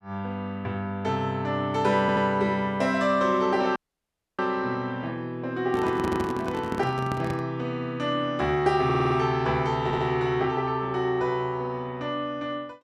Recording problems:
audio stuttering; 4 times, first at 2 s
audio cutting out; at 4 s for 0.5 s
handling noise; from 5.5 to 7.5 s; peak -1 dB vs average level

